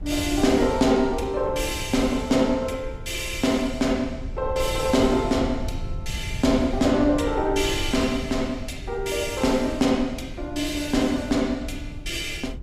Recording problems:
wind noise; below 100 Hz, SNR 12 dB

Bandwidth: 15 kHz